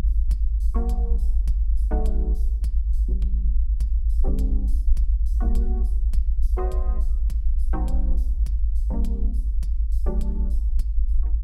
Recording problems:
rumble; below 56 Hz, SNR -13 dB

